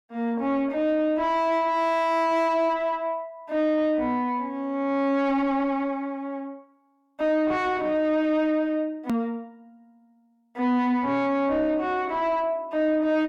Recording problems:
distortion; soft clipping, signal-to-distortion ratio 5 dB
edit click; at 9 s

